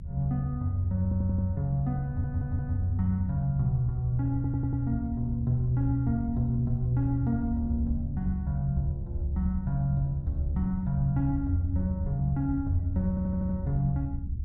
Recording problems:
low-frequency rumble; below 88 Hz, SNR 6 dB
audio stuttering; 4 times, first at 1 s

